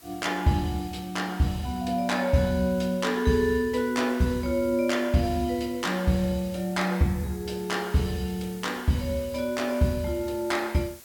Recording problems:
hiss; slope -1 dB per octave, SNR 21 dB

